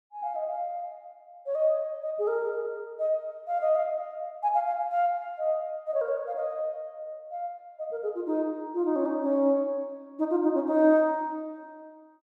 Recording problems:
none

